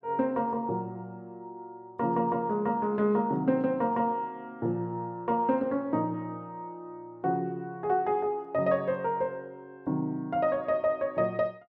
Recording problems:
none

